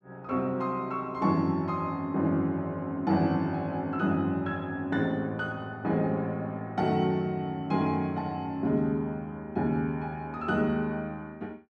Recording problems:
none

